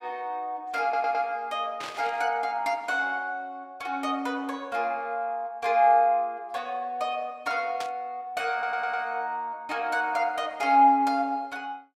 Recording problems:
stutter; at 1 s and at 8.5 s
burst of static; at 2 s and at 8 s; peak -6 dB vs average level

